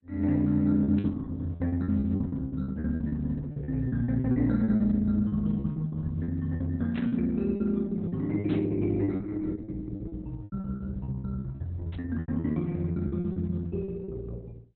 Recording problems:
codec artefacts; Opus, log-spectral distance 2 dB, nothing above 4.1 kHz
packet loss; 16% of the sound replaced, filled with repeated pitch periods
static burst; 4 times, first at 1 s; peak -14 dB vs average level

